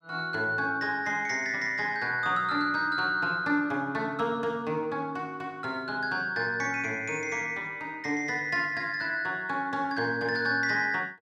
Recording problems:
none

